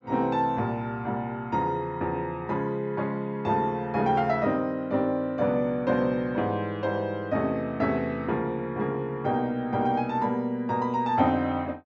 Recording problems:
treble cut off; nothing above 7.8 kHz

